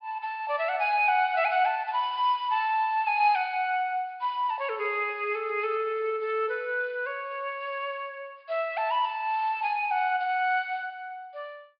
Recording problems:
treble cut off; nothing above 5 kHz

